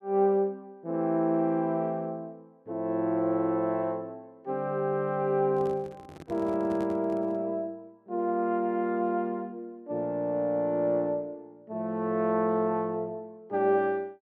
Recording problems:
microphone handling noise; from 5.5 to 7.5 s; peak -9 dB vs average level

